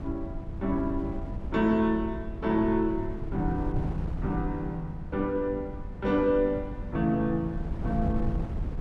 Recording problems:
wind noise; below 130 Hz, SNR 7 dB

